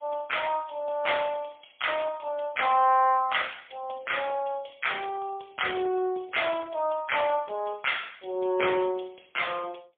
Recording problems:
telephone audio; 320 Hz to 3.4 kHz, AMR-NB, then MP3

